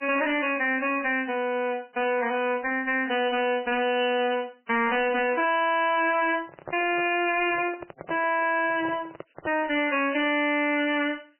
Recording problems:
lossy compression; MP3, log-spectral distance 6 dB, nothing above 2.5 kHz
distorted audio; hard clipping, uneven, signal-to-distortion ratio 6 dB
microphone handling noise; from 6.5 to 10 s; peak -7 dB vs average level

